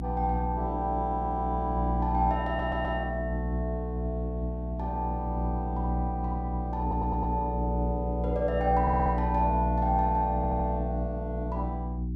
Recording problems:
mains hum; 60 Hz, harmonics up to 360 Hz, SNR 1 dB
audio stuttering; 4 times, first at 2.5 s

